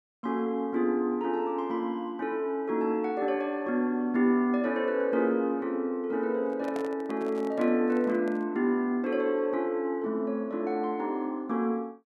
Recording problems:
microphone handling noise; from 6.5 to 8.5 s; peak -7 dB vs average level

